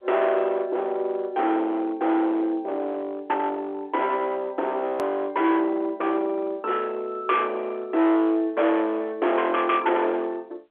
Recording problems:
phone line; 470 Hz to 3.6 kHz, G.711
distorted audio; hard clipping, signal-to-distortion ratio 8 dB
click at an edit; at 5 s

